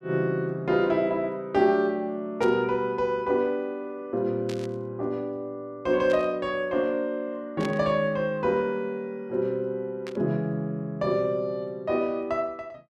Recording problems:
static burst; 5 times, first at 2.5 s; peak -7 dB vs average level

